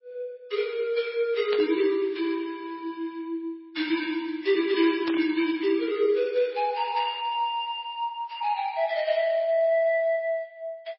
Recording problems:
lossy codec; MP3, log-spectral distance 2 dB, nothing above 5.3 kHz
static burst; at 1.5 s and at 5 s; peak -3 dB vs average level

